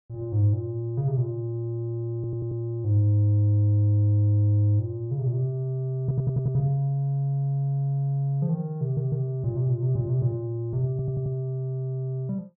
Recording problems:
audio stuttering; 4 times, first at 2 s

